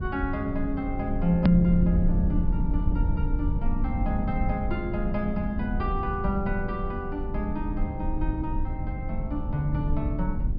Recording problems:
low-pass filter; nothing above 5.5 kHz
rumble; below 88 Hz, SNR 2 dB
hard cut with a click; at 1.5 s

